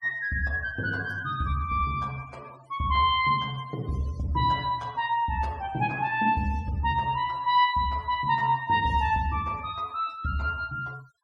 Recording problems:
noise reduction artefacts; signal-to-artefact ratio 24 dB

